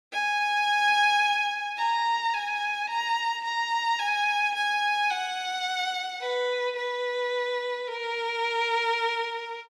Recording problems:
none

